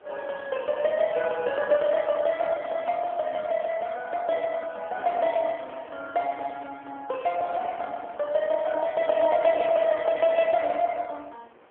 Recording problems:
telephone audio; 280 Hz to 3.3 kHz, AMR-NB
wind noise; below 1.4 kHz, SNR 23 dB

